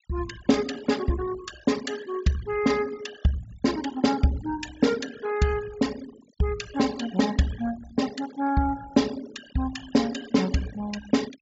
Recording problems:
low-pass filter; nothing above 8 kHz
noise reduction artefacts; signal-to-artefact ratio 16 dB

